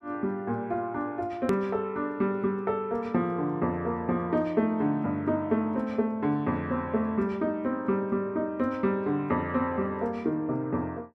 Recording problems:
hard cut with a click; at 1.5 s

